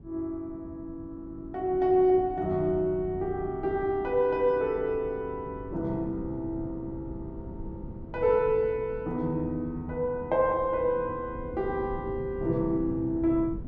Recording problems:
wind on the microphone; below 210 Hz, SNR 15 dB

